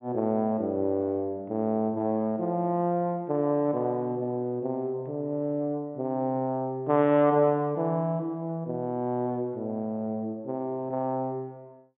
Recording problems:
treble missing; nothing above 4 kHz

